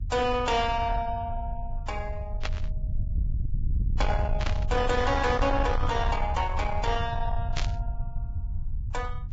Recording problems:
codec artefacts; Vorbis, log-spectral distance 2 dB, nothing above 7.3 kHz
distortion; soft clipping, signal-to-distortion ratio 11 dB
rumble; below 88 Hz, SNR 3 dB
static burst; at 2.5 s, at 4.5 s and at 7.5 s; peak -1 dB vs average level

